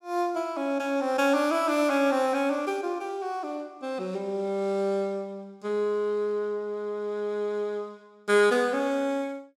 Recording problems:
none

